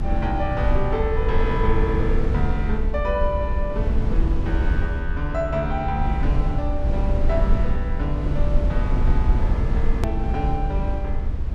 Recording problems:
hum; 60 Hz, harmonics up to 840 Hz, SNR 20 dB
rumble; below 72 Hz, SNR -3 dB
click at an edit; at 10 s

